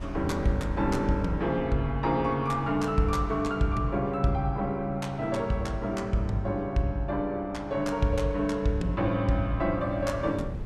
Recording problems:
wind noise; below 140 Hz, SNR 15 dB

